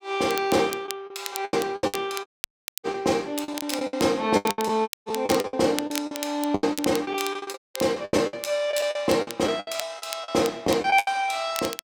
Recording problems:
crackling; vinyl, SNR 12 dB
lost packets; 15% of the sound replaced, filled with the last packet
dropout; at 2.5 s for 0.5 s, at 5 s and at 7.5 s

